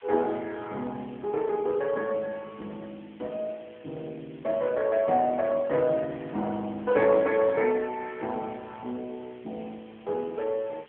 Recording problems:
phone line; 220 Hz to 3.4 kHz, AMR-NB
background hiss; SNR 27 dB

